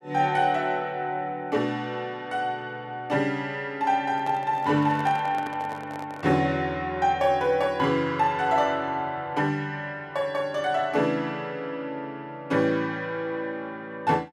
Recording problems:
microphone handling noise; from 4 to 6.5 s; peak -7 dB vs average level

